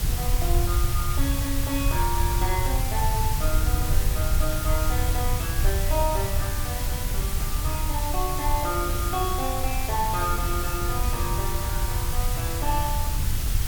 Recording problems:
hiss; slope 0 dB per octave, SNR 1 dB
low-frequency rumble; below 82 Hz, SNR -2 dB
wind on the microphone; below 230 Hz, SNR 10 dB

